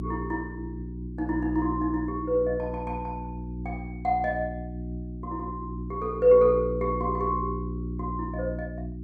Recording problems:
mains hum; 60 Hz, harmonics up to 360 Hz, SNR 8 dB

